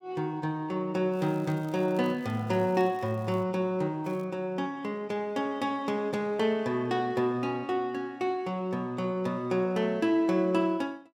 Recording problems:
crackle; from 1 to 3.5 s and at 4 s; loose cable, SNR 29 dB

